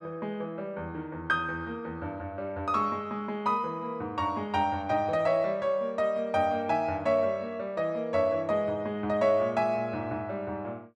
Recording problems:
none

